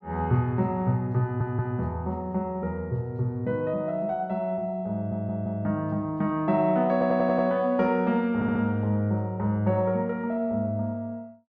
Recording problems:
audio stuttering; 4 times, first at 1 s

